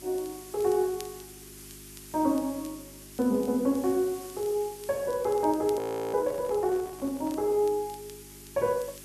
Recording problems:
hum; 50 Hz, harmonics up to 400 Hz, SNR 23 dB
hiss; slope +2 dB per octave, SNR 17 dB
crackle; vinyl, SNR 25 dB
handling noise; from 5.5 to 7.5 s; peak -15 dB vs average level
audio freezing; at 6 s

